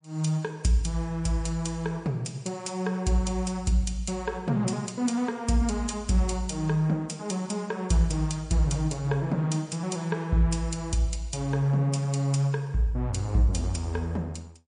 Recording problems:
lossy compression; MP3, log-spectral distance 2 dB, nothing above 9.5 kHz

